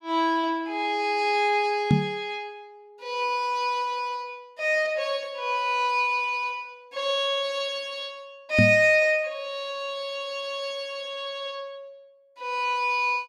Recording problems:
microphone bump; at 2 s and at 8.5 s; peak +8 dB vs average level

